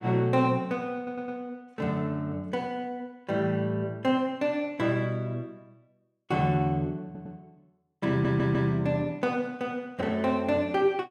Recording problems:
audio stuttering; at 1 s, at 7 s and at 8 s

